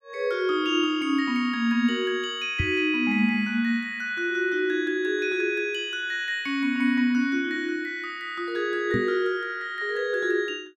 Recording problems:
knock on the microphone; at 2.5 s and at 9 s; peak +2 dB vs average level

